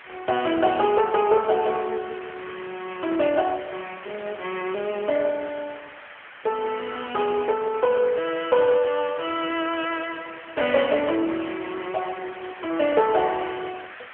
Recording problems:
phone line; 300 Hz to 3.2 kHz, AMR-NB
hiss; SNR 17 dB

